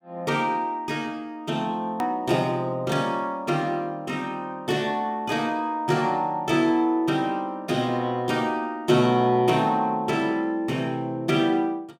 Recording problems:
edit click; at 2 s

